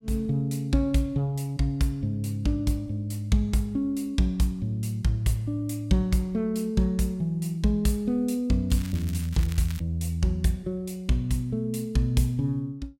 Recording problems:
crackle; from 8.5 to 10 s; loose cable, SNR 17 dB

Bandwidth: 16 kHz